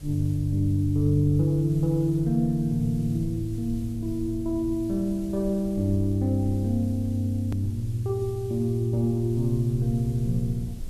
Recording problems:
hiss; slope +2 dB per octave, SNR 27 dB
rumble; below 74 Hz, SNR 16 dB
click at an edit; at 7.5 s

